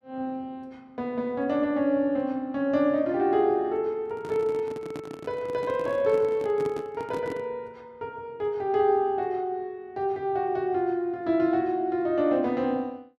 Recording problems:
microphone handling noise; from 4 to 7.5 s; peak -6 dB vs average level

